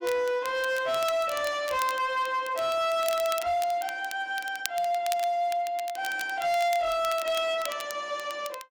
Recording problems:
distortion; hard clipping, signal-to-distortion ratio 11 dB
crackle; vinyl, SNR 13 dB

